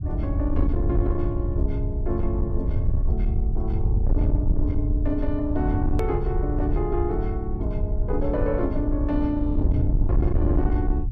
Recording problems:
distortion; soft clipping, signal-to-distortion ratio 11 dB
low-frequency rumble; below 86 Hz, SNR -2 dB
edit click; at 6 s

